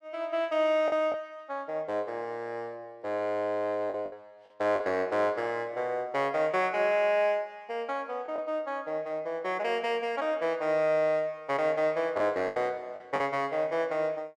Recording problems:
lost packets; 3% of the sound replaced, filled with the last packet

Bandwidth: 13 kHz